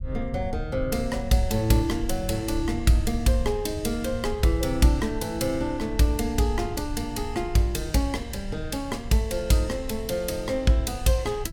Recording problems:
rumble; below 88 Hz, SNR 10 dB

